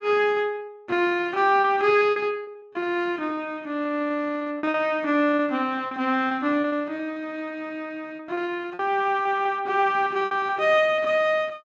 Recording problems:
packet loss; 14% of the sound replaced, filled with repeated pitch periods

